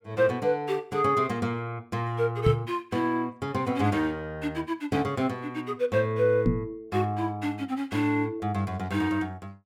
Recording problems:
microphone bump; at 2.5 s and at 6.5 s; peak +7 dB vs average level

